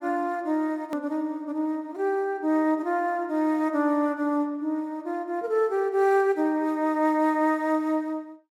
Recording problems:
hard cut with a click; at 1 s

